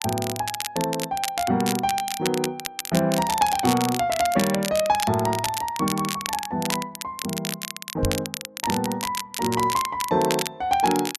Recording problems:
crackling; vinyl, SNR 6 dB
microphone bump; at 8 s; peak +1 dB vs average level

